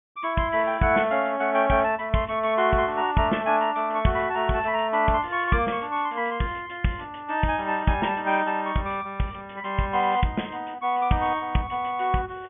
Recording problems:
treble missing; nothing above 3.4 kHz

